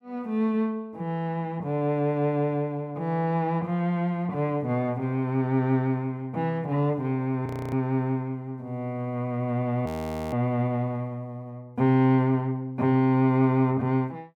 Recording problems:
audio freezing; at 7.5 s and at 10 s

